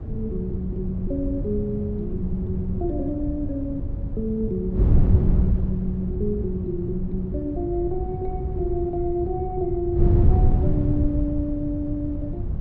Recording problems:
wind noise; below 120 Hz, SNR -2 dB

